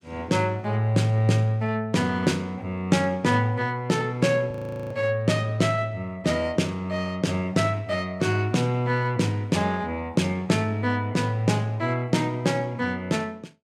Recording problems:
frozen audio; at 4.5 s

